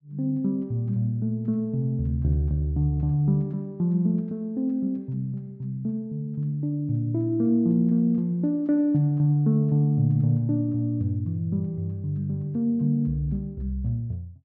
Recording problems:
none

